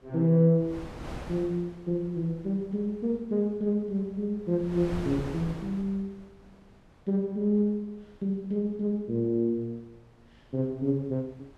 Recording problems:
wind noise; below 630 Hz, SNR 15 dB

